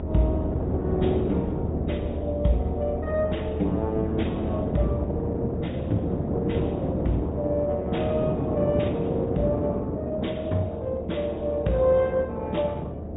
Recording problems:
treble missing; nothing above 3.8 kHz
codec artefacts; Opus, log-spectral distance 2 dB
hum; 60 Hz, harmonics up to 720 Hz, SNR 11 dB
rumble; below 78 Hz, strongest tone 76 Hz, SNR 7 dB
wind on the microphone; below 390 Hz, SNR 3 dB

